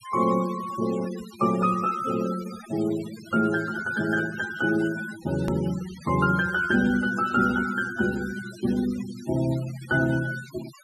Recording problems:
noise reduction artefacts; signal-to-artefact ratio 16 dB
edit click; at 5.5 s

